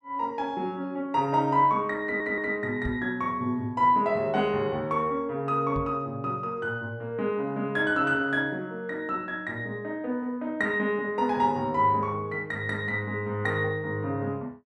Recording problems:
stutter; at 2 s
microphone bump; at 3 s and at 6 s; peak -3 dB vs average level

